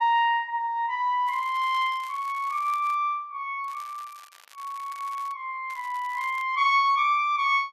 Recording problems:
crackle; from 1.5 to 3 s, from 3.5 to 5.5 s and at 5.5 s; loose cable, SNR 24 dB

